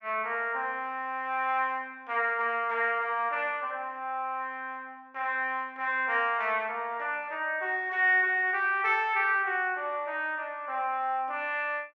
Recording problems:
none

